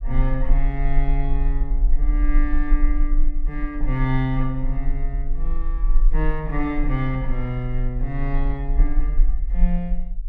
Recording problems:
rumble; below 38 Hz, strongest tone 22 Hz, SNR -3 dB

